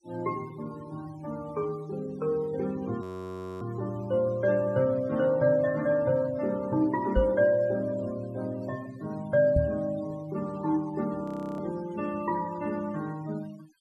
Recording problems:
noise reduction artefacts; signal-to-artefact ratio 21 dB
audio freezing; at 3 s for 0.5 s and at 11 s
microphone bump; at 7 s and at 9.5 s; peak +5 dB vs average level

